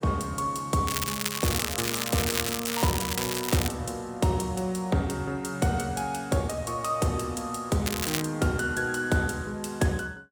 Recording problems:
crackling; from 1 to 3.5 s and at 8 s; loose cable, SNR 1 dB

